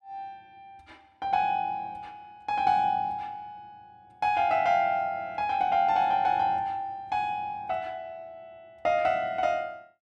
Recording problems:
none

